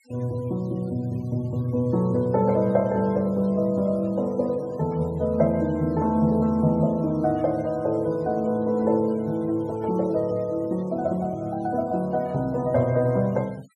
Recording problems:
noise reduction artefacts; signal-to-artefact ratio 28 dB

